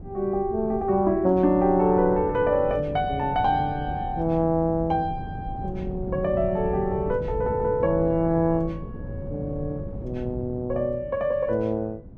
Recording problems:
wind noise; below 210 Hz, SNR 12 dB

